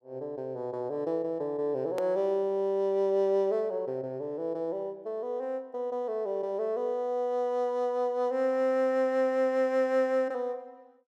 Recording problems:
click at an edit; at 2 s

